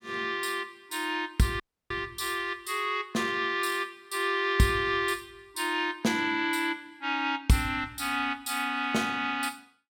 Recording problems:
audio cutting out; at 1.5 s

